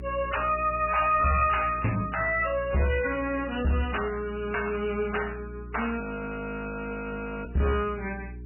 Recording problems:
lossy compression; MP3, log-spectral distance 6 dB, nothing above 2.6 kHz
distortion; soft clipping, signal-to-distortion ratio 10 dB
hum; 60 Hz, harmonics up to 420 Hz, SNR 14 dB
audio freezing; at 6 s for 1.5 s

